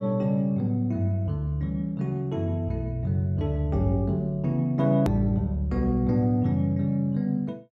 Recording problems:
click at an edit; at 5 s

